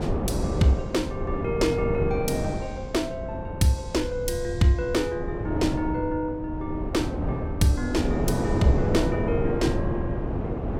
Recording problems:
rumble; below 100 Hz, SNR 11 dB
wind on the microphone; below 420 Hz, SNR 2 dB

